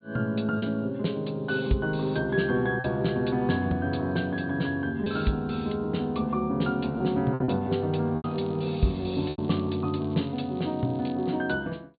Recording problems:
low-pass filter; nothing above 4.3 kHz
lost packets; 3% of the sound replaced, filled with repeated pitch periods
crackling; from 8.5 to 11 s; loose cable, SNR 27 dB

